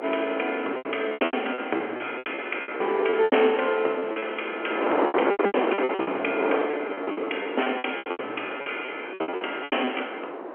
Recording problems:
phone line; 280 Hz to 3.2 kHz, G.711
wind on the microphone; below 930 Hz, SNR 3 dB
packet loss; 20% of the sound replaced, filled with repeated pitch periods

